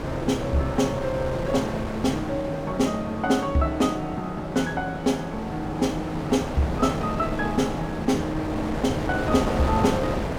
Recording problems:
wind on the microphone; below 740 Hz, SNR 5 dB

